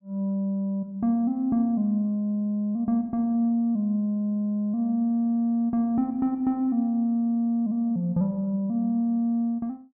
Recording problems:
none

